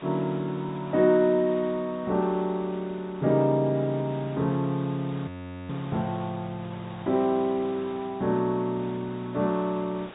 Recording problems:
treble cut off; nothing above 4 kHz
hiss; SNR 19 dB
audio freezing; at 5.5 s

